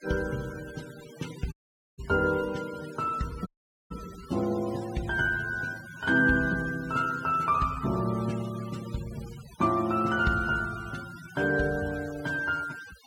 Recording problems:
denoising artefacts; signal-to-artefact ratio 18 dB
audio cutting out; at 1.5 s and at 3.5 s

